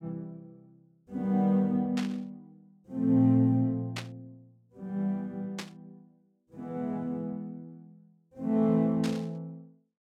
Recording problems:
static burst; 4 times, first at 2 s; peak -4 dB vs average level

